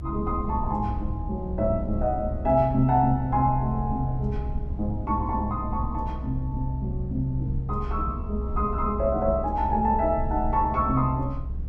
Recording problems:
low-frequency rumble; below 68 Hz, SNR 6 dB

